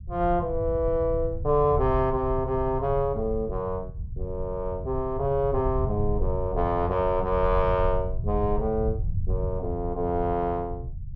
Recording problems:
rumble; below 94 Hz, SNR 7 dB

